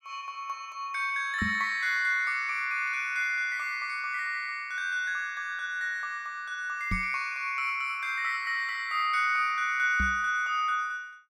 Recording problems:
microphone bump; at 1.5 s, at 7 s and at 10 s; peak +1 dB vs average level

